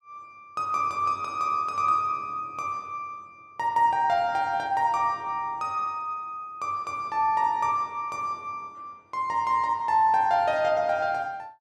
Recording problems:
none

